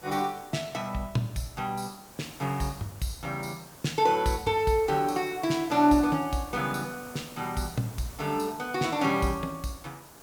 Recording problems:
background hiss; SNR 19 dB

